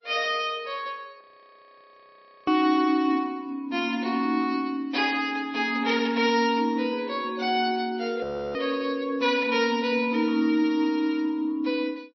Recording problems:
codec artefacts; MP3, log-spectral distance 2 dB, nothing above 5.2 kHz
audio freezing; at 1 s for 1.5 s and at 8 s

